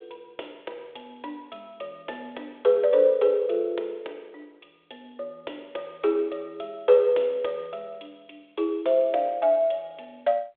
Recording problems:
phone line; 370 Hz to 3.9 kHz, G.726

